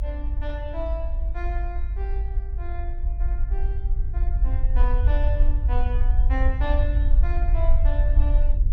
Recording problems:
low-frequency rumble; below 54 Hz, SNR -11 dB

